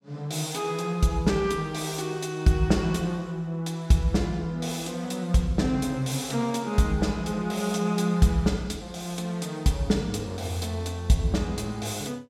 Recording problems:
none

